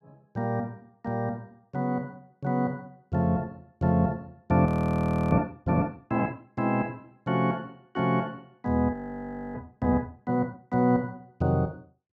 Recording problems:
audio freezing; at 4.5 s for 0.5 s and at 9 s for 0.5 s

